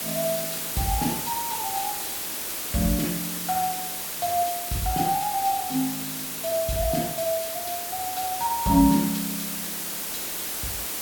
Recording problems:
background hiss; slope -1 dB per octave, SNR 2 dB

